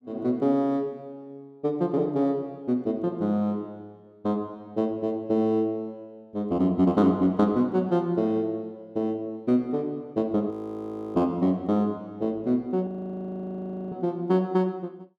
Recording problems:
audio freezing; at 11 s for 0.5 s and at 13 s for 1 s

